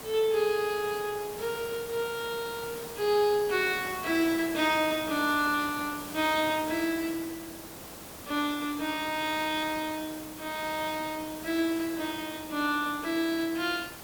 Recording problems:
background hiss; slope -4 dB per octave, SNR 12 dB

